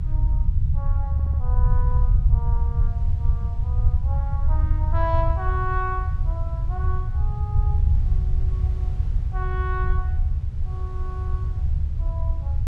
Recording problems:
rumble; below 82 Hz, SNR -9 dB
wind noise; below 690 Hz, SNR 18 dB
audio stuttering; at 1 s

